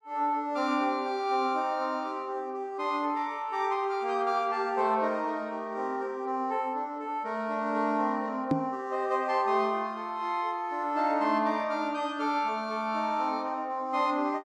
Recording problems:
microphone bump; at 8.5 s; peak +6 dB vs average level

